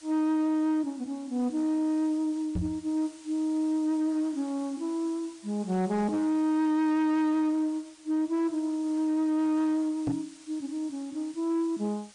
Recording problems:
lossy compression; MP3, log-spectral distance 3 dB
distorted audio; hard clipping, signal-to-distortion ratio 12 dB
hiss; slope +1 dB per octave, SNR 24 dB
microphone thump; at 2.5 s and at 10 s; peak +2 dB vs average level

